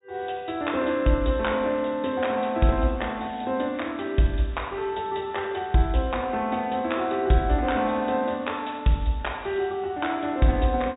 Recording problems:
low-pass filter; nothing above 4 kHz

